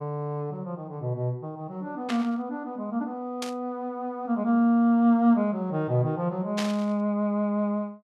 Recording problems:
static burst; at 2 s, at 3.5 s and at 6.5 s; peak -2 dB vs average level

